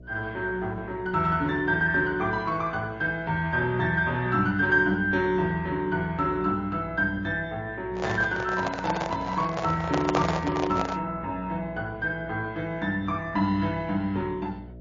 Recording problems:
lossy codec; Opus, then MP3, log-spectral distance 2 dB, nothing above 6.2 kHz
hum; 60 Hz, harmonics up to 660 Hz, SNR 20 dB
microphone handling noise; from 8 to 11 s; peak +3 dB vs average level

